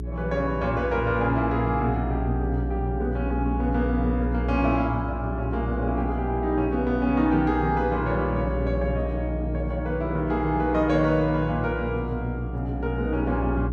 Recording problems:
hum; 60 Hz, harmonics up to 420 Hz, SNR 5 dB

